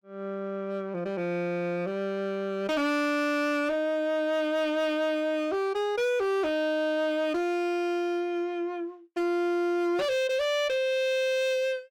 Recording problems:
distortion; hard clipping, signal-to-distortion ratio 10 dB

